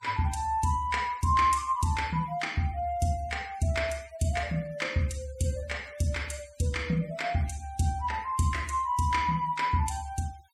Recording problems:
noise reduction artefacts; signal-to-artefact ratio 23 dB

